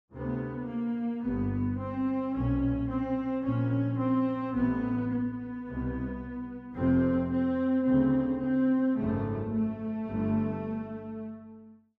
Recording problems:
none

